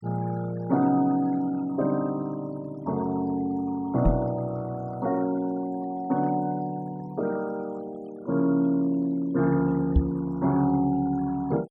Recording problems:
noise reduction artefacts; signal-to-artefact ratio 23 dB
microphone bump; at 4 s and at 10 s; peak +8 dB vs average level

